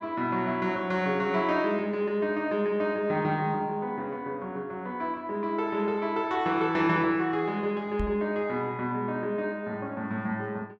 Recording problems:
microphone bump; at 8 s; peak -2 dB vs average level

